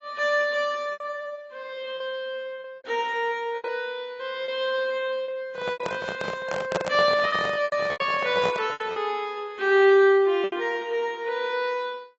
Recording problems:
codec artefacts; AAC, log-spectral distance 2 dB, nothing above 7.1 kHz
lost packets; 7% of the sound replaced, filled with repeated pitch periods
handling noise; from 5.5 to 9 s; peak +3 dB vs average level

